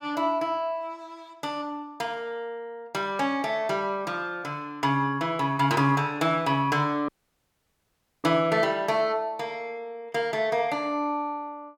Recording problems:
dropout; at 7 s for 1 s

